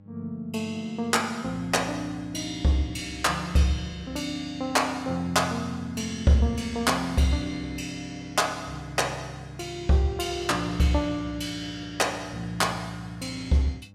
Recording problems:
hum; 50 Hz, harmonics up to 800 Hz, SNR 23 dB

